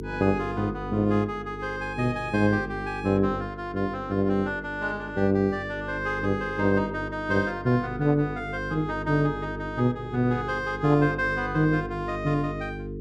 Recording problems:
electrical hum; 50 Hz, harmonics up to 450 Hz, SNR 11 dB

